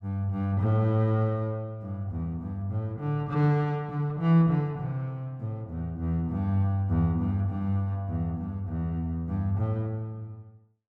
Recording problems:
none

